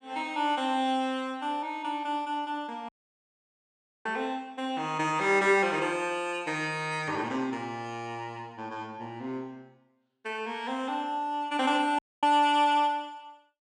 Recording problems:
audio cutting out; at 3 s for 1 s and at 12 s

